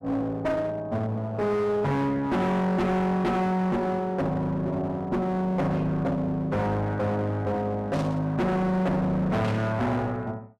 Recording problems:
distortion; hard clipping, uneven, signal-to-distortion ratio 5 dB
static burst; at 8 s and at 9.5 s; peak -8 dB vs average level

